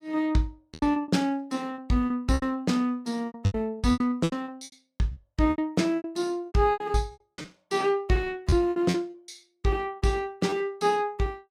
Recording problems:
lost packets; 16% of the sound replaced, filled with repeated pitch periods

